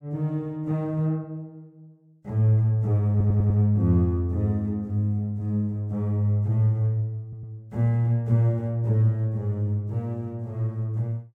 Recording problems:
stutter; at 3 s and at 7 s

